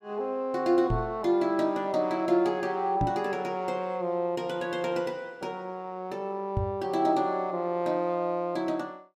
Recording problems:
knock on the microphone; at 1 s, at 3 s and at 6.5 s; peak +3 dB vs average level

